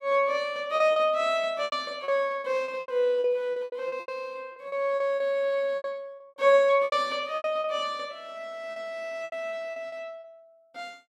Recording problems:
lost packets; 13% of the sound replaced, filled with repeated pitch periods

